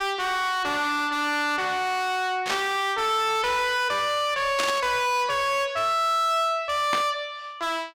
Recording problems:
distortion; soft clipping, signal-to-distortion ratio 6 dB
static burst; at 2.5 s, at 4.5 s and at 7 s; peak +1 dB vs average level

